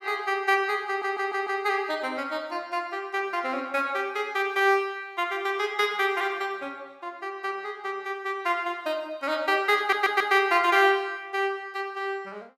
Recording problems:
audio stuttering; at 1 s and at 10 s

